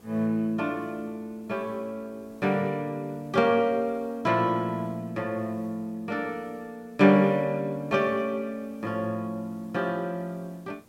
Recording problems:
background hiss; SNR 29 dB

